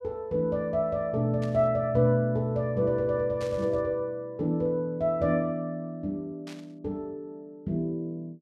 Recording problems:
static burst; at 1.5 s, at 3.5 s and at 6.5 s; peak -12 dB vs average level

